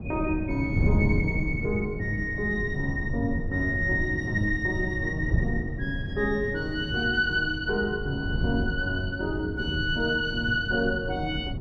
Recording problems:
wind on the microphone; below 170 Hz, SNR 4 dB

